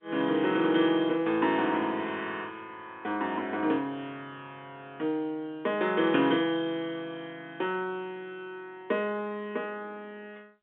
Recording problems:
phone line; 170 Hz to 3.7 kHz, G.711

